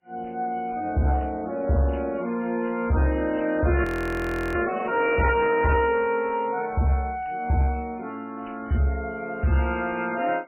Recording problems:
lossy compression; MP3, log-spectral distance 6 dB, nothing above 16 kHz
distorted audio; soft clipping, signal-to-distortion ratio 11 dB
frozen audio; at 4 s for 0.5 s

